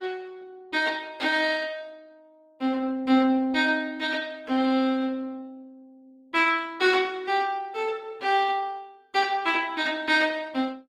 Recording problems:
lossy compression; Opus, log-spectral distance 2 dB

